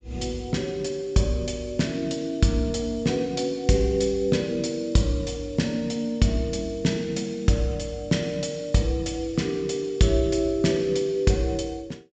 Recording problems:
low-pass filter; nothing above 8 kHz

